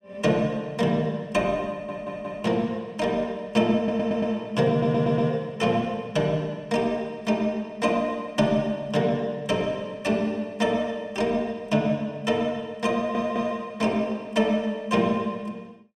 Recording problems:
stutter; 4 times, first at 1.5 s

